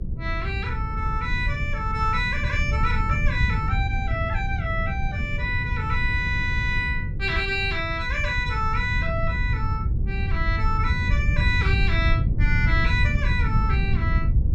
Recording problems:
electrical hum; 60 Hz, harmonics up to 540 Hz, SNR 19 dB
wind on the microphone; below 110 Hz, SNR 0 dB

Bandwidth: 14.5 kHz